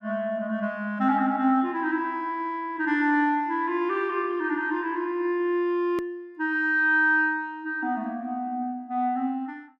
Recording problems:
hard cut with a click; at 6 s

